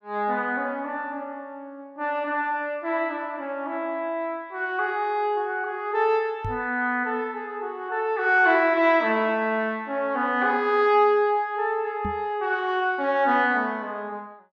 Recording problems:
knock on the microphone; at 6.5 s and at 12 s; peak -4 dB vs average level

